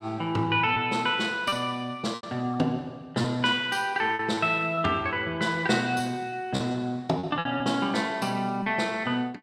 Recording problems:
lost packets; 5% of the sound replaced, filled with repeated pitch periods

